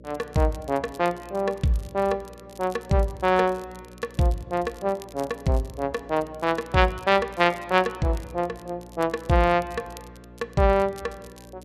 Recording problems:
hum; 60 Hz, harmonics up to 600 Hz, SNR 23 dB
crackle; vinyl, SNR 26 dB

